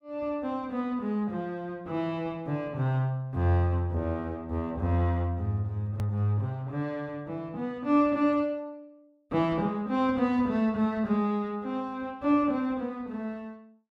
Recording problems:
click at an edit; at 6 s

